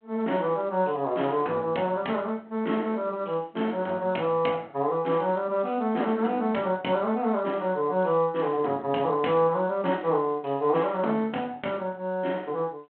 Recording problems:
phone line; 190 Hz to 3.3 kHz, G.726

